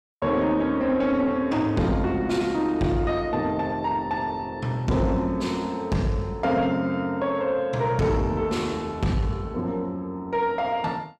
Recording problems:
distortion; soft clipping, signal-to-distortion ratio 11 dB

